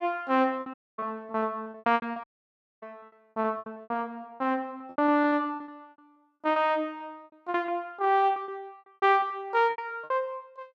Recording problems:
packet loss; 17% of the sound replaced, filled with repeated pitch periods
audio cutting out; at 0.5 s and at 2 s for 0.5 s

